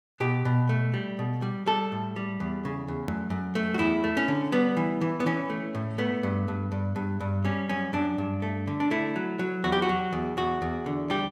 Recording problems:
hard cut with a click; at 3 s

